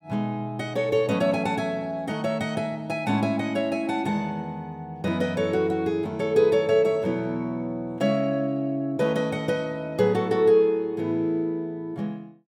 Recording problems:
none

